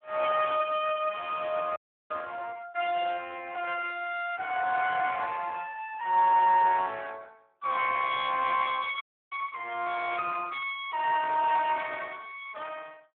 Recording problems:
phone line; 280 Hz to 3.3 kHz, Speex
frozen audio; at 2 s and at 9 s
static burst; at 10 s; peak -16 dB vs average level

